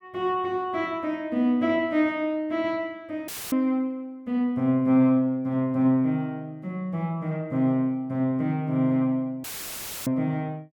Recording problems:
dropout; at 3.5 s and at 9.5 s for 0.5 s; filled with static

